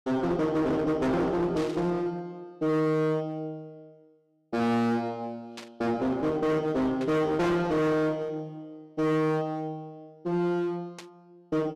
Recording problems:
distorted audio; hard clipping, uneven, signal-to-distortion ratio 6 dB
static burst; 4 times, first at 1.5 s; peak -9 dB vs average level

